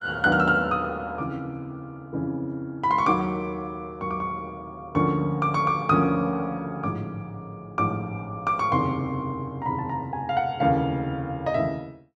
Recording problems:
none

